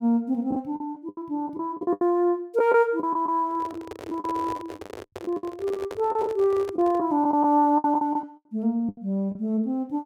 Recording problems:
lost packets; 11% of the sound replaced, filled with the last packet
microphone handling noise; from 3.5 to 7 s; peak -7 dB vs average level

